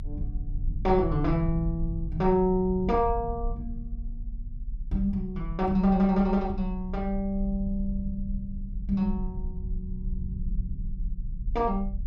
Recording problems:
rumble; below 60 Hz, strongest tone 30 Hz, SNR 8 dB

